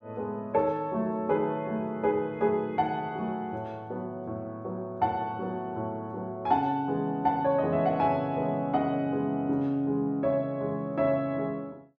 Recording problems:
none

